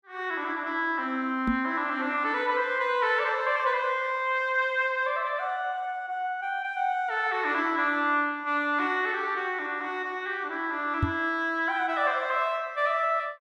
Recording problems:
microphone thump; at 1.5 s and at 11 s; peak +4 dB vs average level

